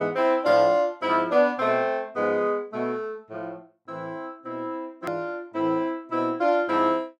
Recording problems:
hard cut with a click; at 5 s

